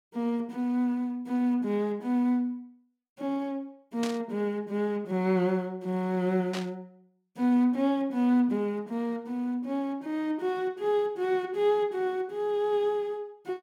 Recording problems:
burst of static; at 4 s and at 6.5 s; peak -4 dB vs average level

